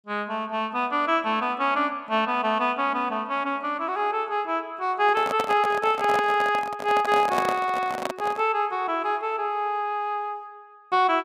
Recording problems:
handling noise; from 5 to 8.5 s; peak +1 dB vs average level

